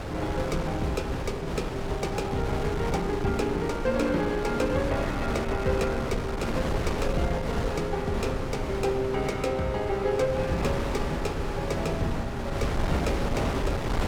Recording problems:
wind noise; below 630 Hz, SNR 2 dB

